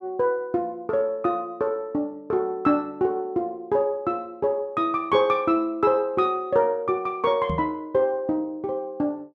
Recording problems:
microphone thump; at 7.5 s; peak -2 dB vs average level

